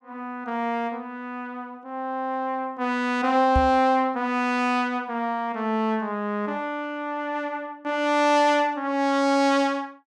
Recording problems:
microphone bump; at 3.5 s; peak +3 dB vs average level

